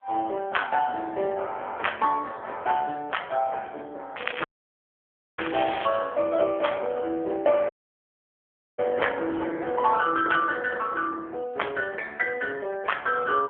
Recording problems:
phone line; 280 Hz to 3.3 kHz, AMR-NB
crackling; from 4 to 6 s; loose cable, SNR 10 dB
audio cutting out; at 4.5 s for 1 s and at 7.5 s for 1 s

